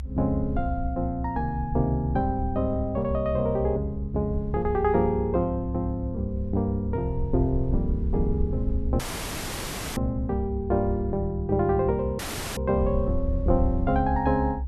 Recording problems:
rumble; below 70 Hz, SNR 6 dB
audio cutting out; at 9 s for 1 s and at 12 s

